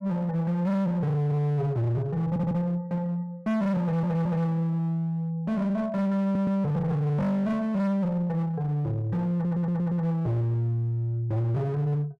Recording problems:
distorted audio; hard clipping, uneven, signal-to-distortion ratio 7 dB
audio stuttering; 4 times, first at 2.5 s

